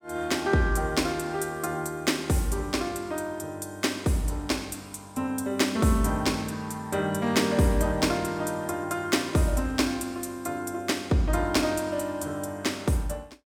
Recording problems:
none

